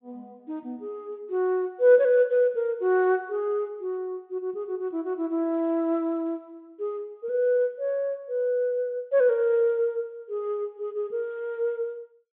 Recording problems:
treble missing; nothing above 3.7 kHz

